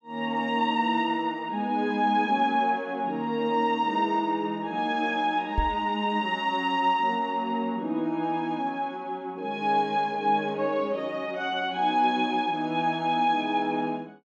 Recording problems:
knock on the microphone; at 5.5 s; peak +2 dB vs average level

